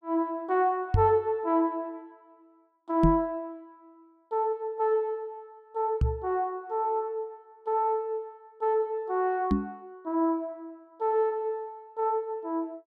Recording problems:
microphone bump; 4 times, first at 1 s; peak +8 dB vs average level

